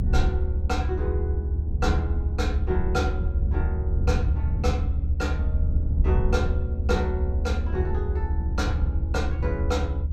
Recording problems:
low-frequency rumble; below 76 Hz, SNR -5 dB

